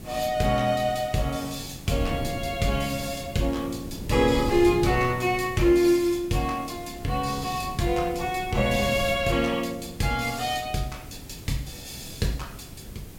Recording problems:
background hiss; slope -1 dB per octave, SNR 22 dB
wind noise; below 260 Hz, SNR 13 dB

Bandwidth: 16.5 kHz